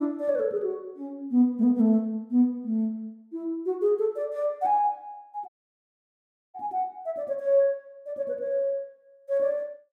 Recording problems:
dropout; at 5.5 s for 1 s

